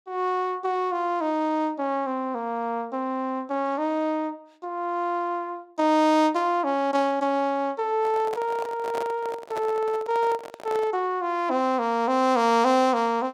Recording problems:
microphone handling noise; from 8 to 11 s; peak -5 dB vs average level

